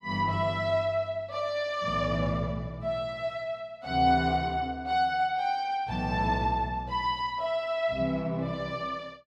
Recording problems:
none

